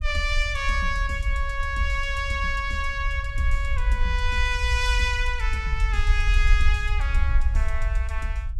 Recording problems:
low-frequency rumble; below 58 Hz, SNR 0 dB

